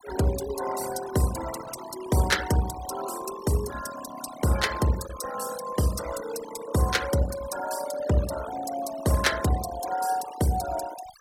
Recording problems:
denoising artefacts; signal-to-artefact ratio 12 dB

